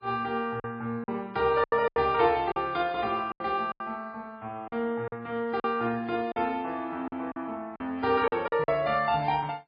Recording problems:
lossy compression; MP3, log-spectral distance 2 dB, nothing above 4 kHz
packet loss; 9% of the sound replaced, filled with silence

